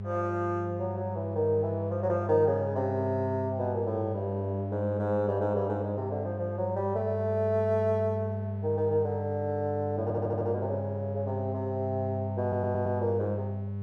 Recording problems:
hum; 50 Hz, harmonics up to 600 Hz, SNR 5 dB
audio stuttering; at 10 s and at 12 s

